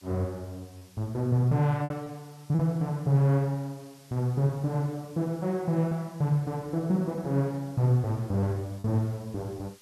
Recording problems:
hiss; slope +1 dB per octave, SNR 27 dB
packet loss; 3% of the sound replaced, filled with repeated pitch periods

